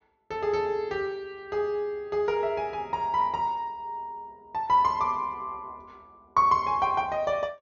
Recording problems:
treble cut off; nothing above 6.8 kHz

